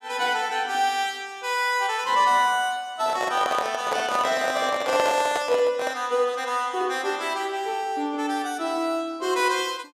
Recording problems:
microphone handling noise; from 3 to 6 s; peak +2 dB vs average level

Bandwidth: 14.5 kHz